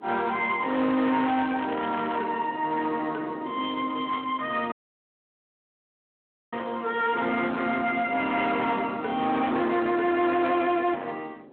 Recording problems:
phone line; 190 Hz to 3.7 kHz, Speex
distorted audio; hard clipping, signal-to-distortion ratio 11 dB
wind on the microphone; below 490 Hz, SNR 19 dB
crackling; at 1 s; loose cable, SNR 15 dB
dropout; at 4.5 s for 2 s

